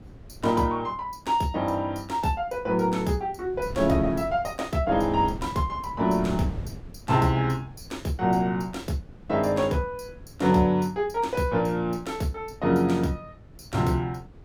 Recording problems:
wind on the microphone; below 210 Hz, SNR 16 dB

